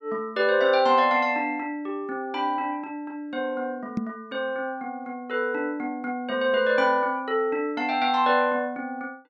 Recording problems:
microphone bump; at 4 s; peak +2 dB vs average level

